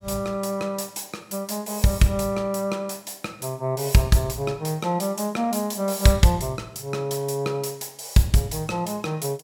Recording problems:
none

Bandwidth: 17 kHz